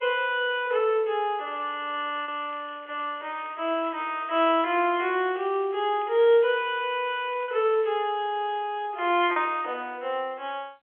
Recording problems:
phone line; 370 Hz to 3.3 kHz, G.711
lost packets; 1.1% of the sound replaced, filled with repeated pitch periods
crackling; from 1.5 to 4 s and from 5 to 8 s; loose cable, SNR 28 dB

